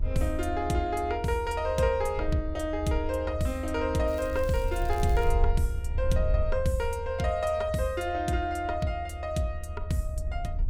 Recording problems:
low-frequency rumble; below 78 Hz, SNR 5 dB
crackling; from 4 to 5.5 s; loose cable, SNR 21 dB

